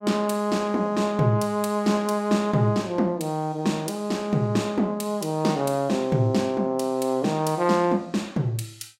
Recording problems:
none

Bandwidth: 16 kHz